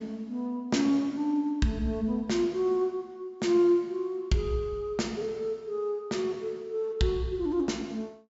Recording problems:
treble cut off; nothing above 8 kHz

